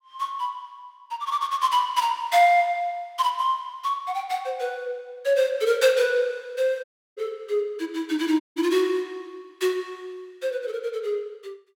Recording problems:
audio cutting out; at 7 s and at 8.5 s

